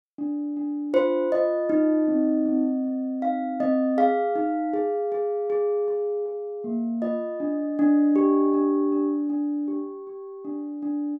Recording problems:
none

